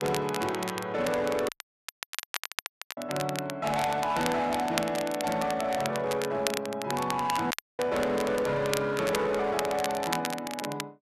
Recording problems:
distorted audio; hard clipping, signal-to-distortion ratio 12 dB
crackle; vinyl, SNR 8 dB
audio cutting out; at 1.5 s for 1.5 s and at 7.5 s

